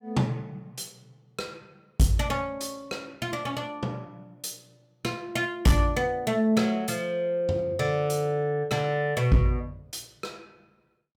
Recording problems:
distorted audio; hard clipping, uneven, signal-to-distortion ratio 11 dB

